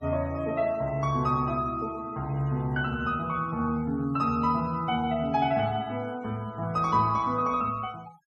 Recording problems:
denoising artefacts; signal-to-artefact ratio 25 dB

